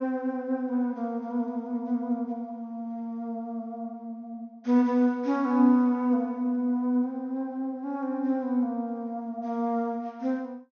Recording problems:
treble cut off; nothing above 6.5 kHz

